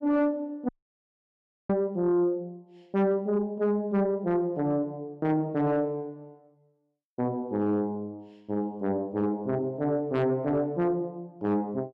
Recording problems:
distortion; soft clipping, signal-to-distortion ratio 11 dB
dropout; at 0.5 s for 1 s

